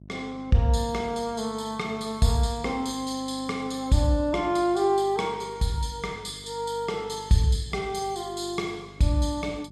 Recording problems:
electrical hum; 50 Hz, harmonics up to 600 Hz, SNR 22 dB

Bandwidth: 13 kHz